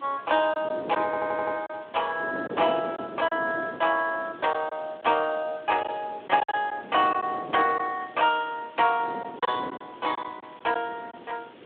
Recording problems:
telephone audio; 320 Hz to 3.6 kHz, Speex
background hiss; SNR 27 dB
wind noise; below 600 Hz, SNR 14 dB
packet loss; 5% of the sound replaced, filled with silence
audio stuttering; at 1 s

